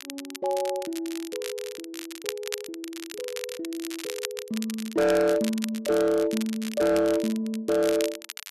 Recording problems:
distorted audio; hard clipping, signal-to-distortion ratio 11 dB
crackle; vinyl, SNR 11 dB

